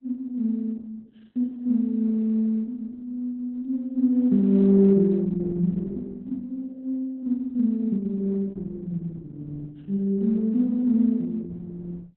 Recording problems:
codec artefacts; Opus, log-spectral distance 2 dB, nothing above 3.9 kHz

